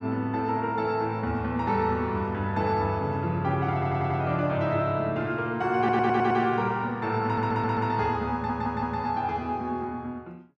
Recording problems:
stutter; 4 times, first at 3.5 s

